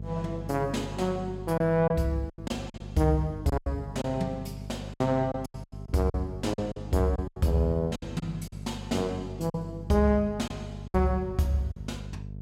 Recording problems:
hum; 50 Hz, harmonics up to 450 Hz, SNR 11 dB
packet loss; 9% of the sound replaced, filled with silence

